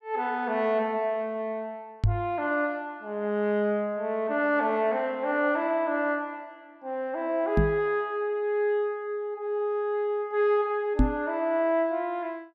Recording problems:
knock on the microphone; at 2 s, at 7.5 s and at 11 s; peak +8 dB vs average level

